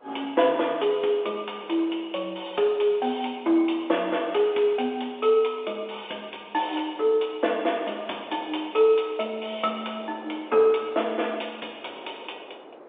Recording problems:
telephone audio; 280 Hz to 3.6 kHz, G.711
wind on the microphone; below 830 Hz, SNR 23 dB

